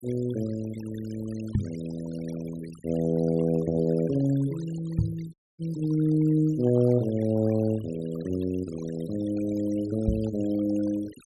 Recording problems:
noise reduction artefacts; signal-to-artefact ratio 21 dB
microphone thump; at 1.5 s, at 5 s and at 10 s; peak +5 dB vs average level
audio cutting out; at 5.5 s

